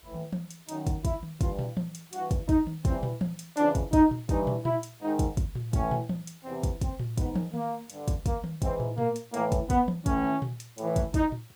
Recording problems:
hiss; slope -1 dB per octave, SNR 26 dB

